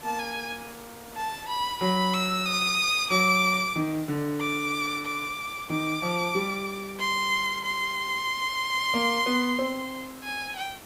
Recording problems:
background hiss; slope -4 dB per octave, SNR 18 dB

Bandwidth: 15.5 kHz